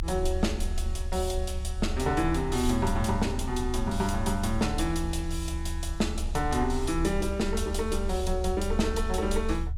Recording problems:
rumble; below 72 Hz, strongest tone 26 Hz, SNR 5 dB

